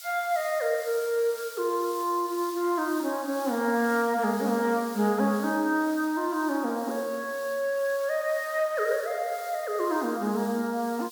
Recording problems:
background hiss; slope +7 dB per octave, SNR 16 dB

